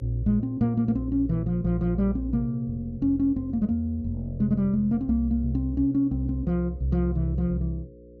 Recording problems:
hum; 60 Hz, harmonics up to 540 Hz, SNR 24 dB

